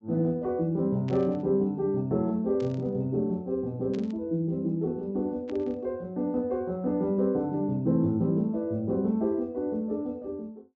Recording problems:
treble cut off; nothing above 8 kHz
burst of static; 4 times, first at 1 s; peak -14 dB vs average level

